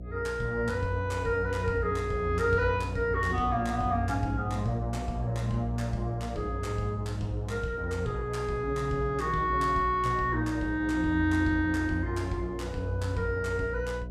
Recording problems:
hum; 60 Hz, harmonics up to 720 Hz, SNR 9 dB

